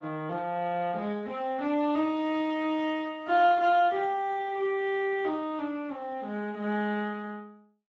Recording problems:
codec artefacts; Speex, log-spectral distance 2 dB

